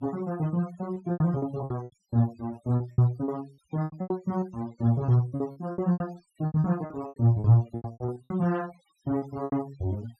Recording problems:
noise reduction artefacts; signal-to-artefact ratio 22 dB
lost packets; 17% of the sound replaced, filled with repeated pitch periods

